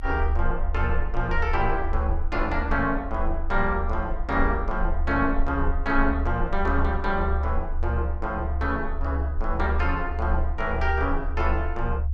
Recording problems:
low-frequency rumble; below 72 Hz, strongest tone 22 Hz, SNR 2 dB

